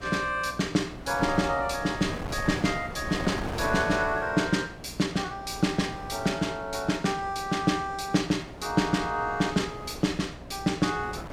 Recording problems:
hum; 60 Hz, harmonics up to 720 Hz, SNR 20 dB
wind noise; below 820 Hz, SNR 12 dB

